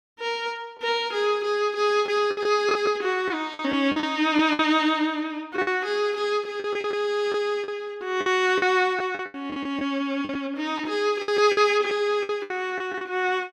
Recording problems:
packet loss; 10% of the sound replaced, filled with the last packet

